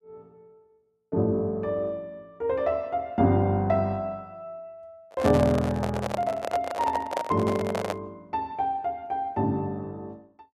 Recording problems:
microphone handling noise; from 5 to 8 s; peak +2 dB vs average level

